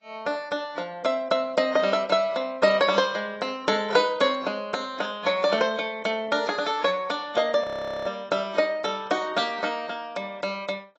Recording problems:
codec artefacts; AAC, log-spectral distance 3 dB, nothing above 7.6 kHz
frozen audio; at 7.5 s

